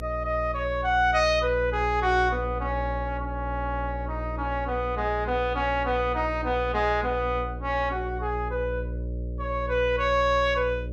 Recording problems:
hum; 60 Hz, harmonics up to 600 Hz, SNR 8 dB

